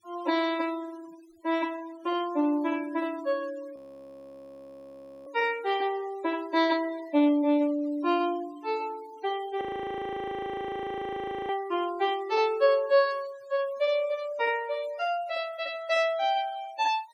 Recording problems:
denoising artefacts; signal-to-artefact ratio 22 dB
frozen audio; at 4 s for 1.5 s and at 9.5 s for 2 s

